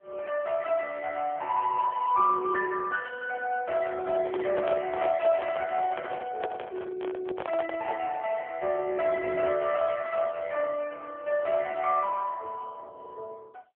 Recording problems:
phone line; 320 Hz to 3 kHz, AMR-NB
microphone handling noise; from 4 to 8 s; peak -1 dB vs average level

